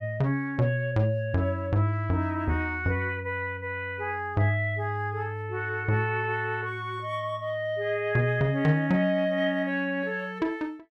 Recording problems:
none

